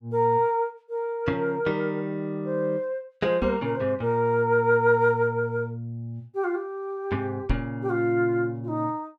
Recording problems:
microphone thump; at 3.5 s and at 7.5 s; peak +2 dB vs average level

